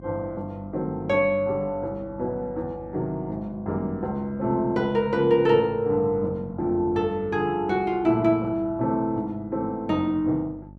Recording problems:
hum; 50 Hz, harmonics up to 650 Hz, SNR 20 dB

